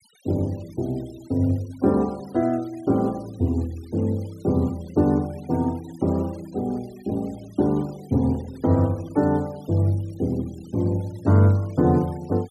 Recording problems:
noise reduction artefacts; signal-to-artefact ratio 27 dB

